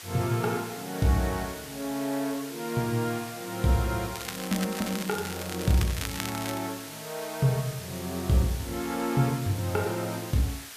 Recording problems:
hiss; slope +1 dB per octave, SNR 11 dB
crackling; from 4 to 6.5 s; loose cable, SNR 8 dB

